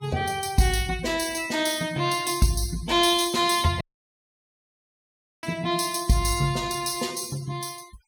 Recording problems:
noise reduction artefacts; signal-to-artefact ratio 20 dB
audio cutting out; at 4 s for 1.5 s

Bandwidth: 17 kHz